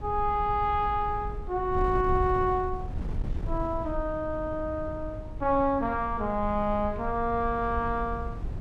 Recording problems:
wind noise; below 96 Hz, SNR 9 dB

